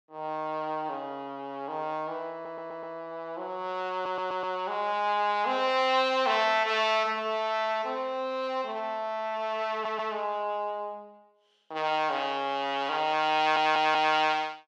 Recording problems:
audio stuttering; 4 times, first at 2.5 s

